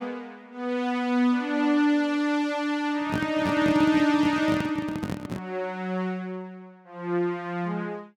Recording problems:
microphone handling noise; from 3 to 5.5 s; peak +1 dB vs average level

